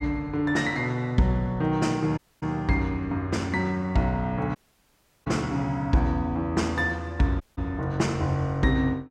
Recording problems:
dropout; at 2 s, at 4.5 s for 0.5 s and at 7.5 s

